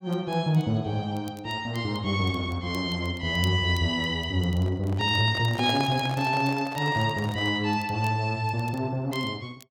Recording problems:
crackling; vinyl, SNR 25 dB
microphone handling noise; from 4.5 to 7.5 s; peak -2 dB vs average level

